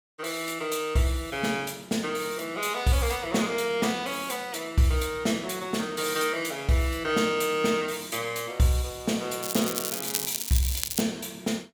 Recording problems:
crackling; from 9.5 to 11 s; loose cable, SNR 2 dB

